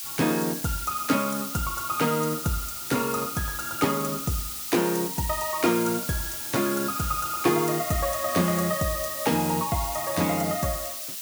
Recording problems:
background hiss; slope +6 dB per octave, SNR 4 dB

